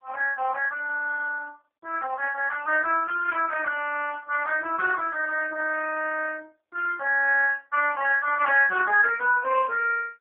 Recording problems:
phone line; 320 Hz to 2.6 kHz, AMR-NB

